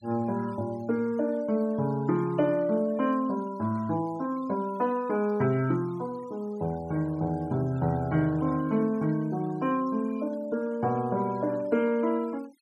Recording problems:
denoising artefacts; signal-to-artefact ratio 24 dB

